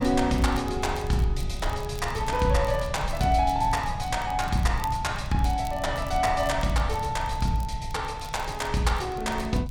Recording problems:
rumble; below 120 Hz, SNR 9 dB
crackling; vinyl, SNR 22 dB

